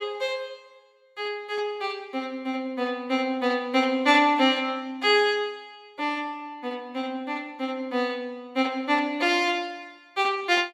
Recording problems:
none

